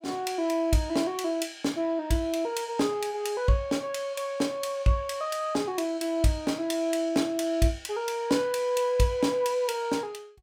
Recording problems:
none

